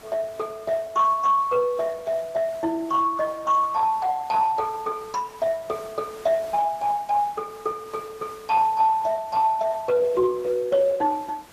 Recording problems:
lossy codec; Speex, log-spectral distance 3 dB
background hiss; slope -3 dB per octave, SNR 24 dB

